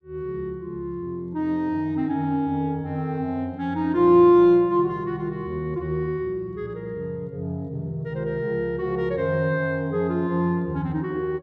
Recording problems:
none

